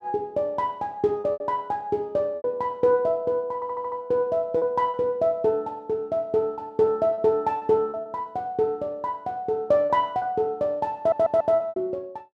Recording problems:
lost packets; 7% of the sound replaced, filled with repeated pitch periods
audio stuttering; at 3.5 s and at 11 s

